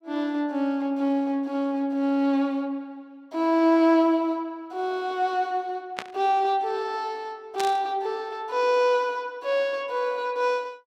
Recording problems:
static burst; at 6 s and at 7.5 s; peak -2 dB vs average level

